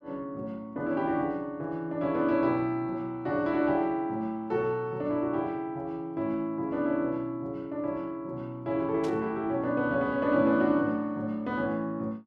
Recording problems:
static burst; at 9 s; peak -11 dB vs average level

